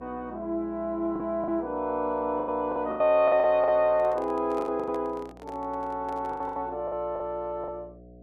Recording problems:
hum; 60 Hz, harmonics up to 720 Hz, SNR 23 dB
lost packets; 11% of the sound replaced, filled with the last packet
handling noise; from 4 to 6.5 s; peak -11 dB vs average level

